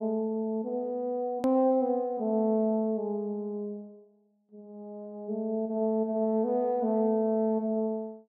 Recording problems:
hard cut with a click; at 1.5 s

